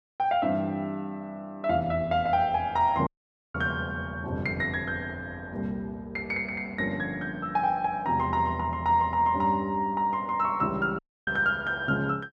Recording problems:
audio cutting out; at 3 s and at 11 s

